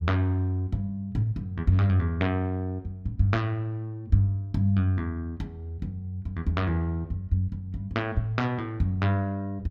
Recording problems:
none

